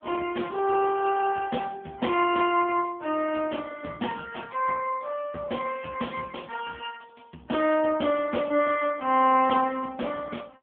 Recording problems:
telephone audio; 190 Hz to 3.3 kHz, AMR-NB

